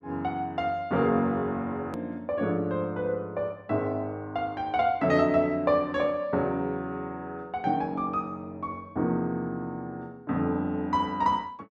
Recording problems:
hard cut with a click; at 2 s

